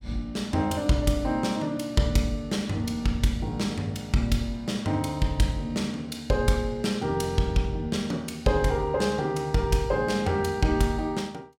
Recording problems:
none

